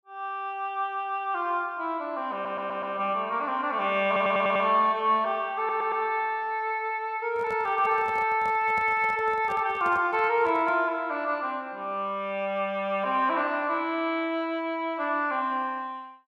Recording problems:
stutter; at 2.5 s, at 4 s and at 5.5 s
microphone handling noise; from 7.5 to 11 s; peak -10 dB vs average level

